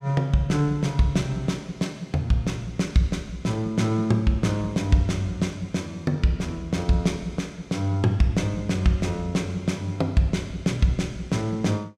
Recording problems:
none

